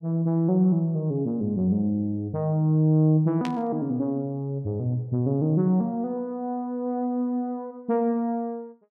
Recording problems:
static burst; at 3.5 s; peak -7 dB vs average level

